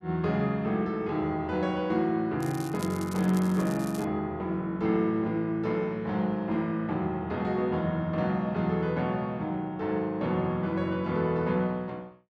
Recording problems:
crackling; from 2.5 to 4 s; loose cable, SNR 17 dB

